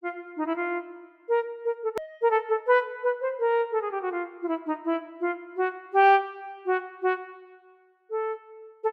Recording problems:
click at an edit; at 2 s

